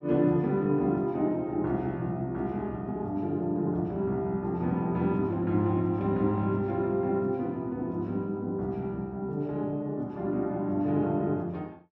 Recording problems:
none

